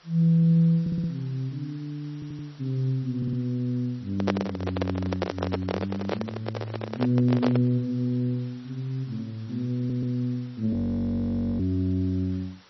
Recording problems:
lossy compression; MP3, log-spectral distance 3 dB, nothing above 4.9 kHz
background hiss; slope -1 dB per octave, SNR 27 dB
audio stuttering; 4 times, first at 1 s
handling noise; from 4 to 7.5 s; peak +5 dB vs average level
frozen audio; at 11 s for 1 s

